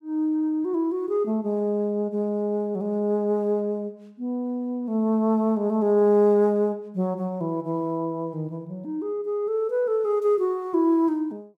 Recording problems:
none

